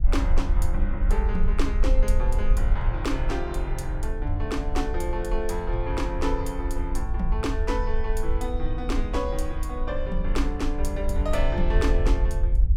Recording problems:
low-frequency rumble; below 52 Hz, strongest tone 22 Hz, SNR -2 dB

